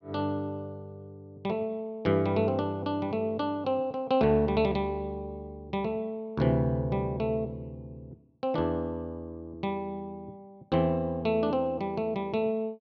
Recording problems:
none

